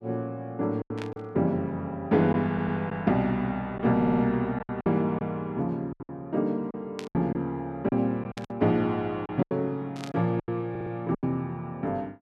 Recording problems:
packet loss; 8% of the sound replaced, filled with silence
static burst; 4 times, first at 1 s; peak -7 dB vs average level
stutter; at 2.5 s, at 4 s and at 11 s

